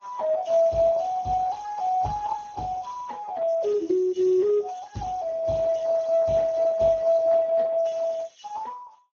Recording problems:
lossy codec; Vorbis, then Speex, log-spectral distance 4 dB, nothing above 6.3 kHz

